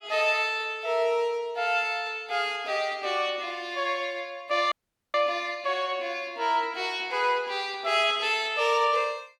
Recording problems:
audio cutting out; at 4.5 s

